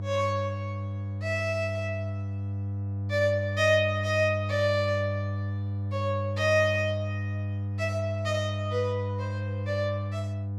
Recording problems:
mains hum; 50 Hz, harmonics up to 500 Hz, SNR 4 dB

